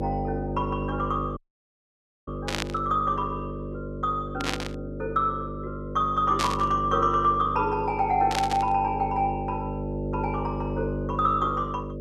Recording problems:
electrical hum; 50 Hz, harmonics up to 600 Hz, SNR 6 dB
audio cutting out; at 1.5 s for 1 s
static burst; 4 times, first at 2.5 s; peak +3 dB vs average level

